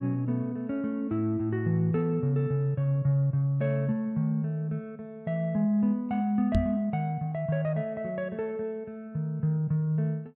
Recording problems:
microphone bump; at 6.5 s; peak +6 dB vs average level

